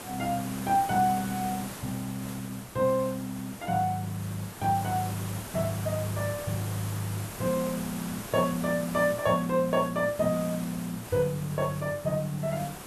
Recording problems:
hiss; slope -4 dB per octave, SNR 11 dB

